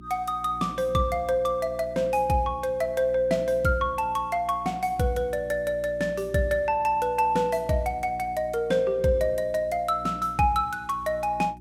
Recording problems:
hum; 60 Hz, harmonics up to 360 Hz, SNR 19 dB

